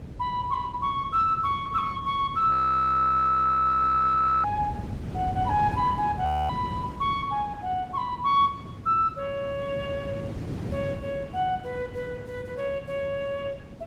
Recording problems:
lossy compression; Opus, log-spectral distance 2 dB, nothing above 18.9 kHz
wind noise; below 240 Hz, SNR 11 dB
audio freezing; at 2.5 s for 2 s and at 6.5 s

